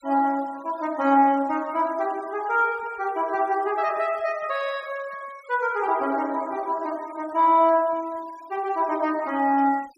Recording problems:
noise reduction artefacts; signal-to-artefact ratio 24 dB

